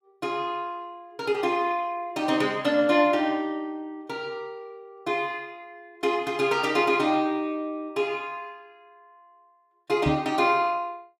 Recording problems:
microphone thump; at 10 s; peak +4 dB vs average level

